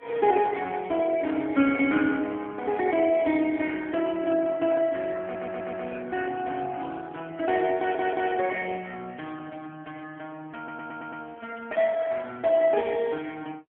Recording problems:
telephone audio; 190 Hz to 3.3 kHz, AMR-NB
stutter; at 5 s, at 8 s and at 11 s

